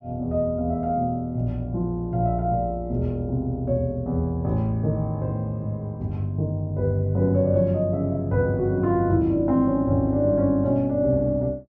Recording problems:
none

